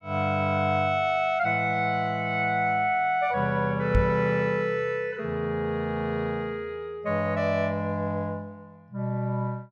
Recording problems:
knock on the microphone; at 4 s; peak +5 dB vs average level

